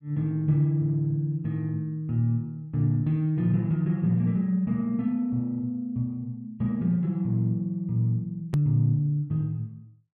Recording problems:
hard cut with a click; at 8.5 s

